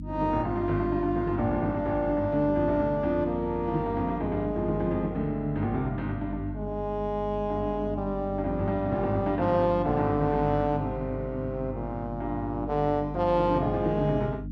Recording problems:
electrical hum; 50 Hz, harmonics up to 300 Hz, SNR 10 dB

